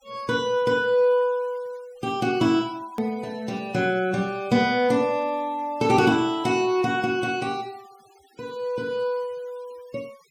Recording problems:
denoising artefacts; signal-to-artefact ratio 27 dB
edit click; at 3 s

